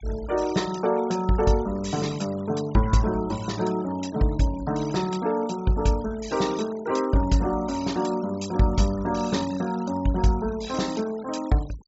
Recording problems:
treble missing; nothing above 8 kHz
denoising artefacts; signal-to-artefact ratio 18 dB

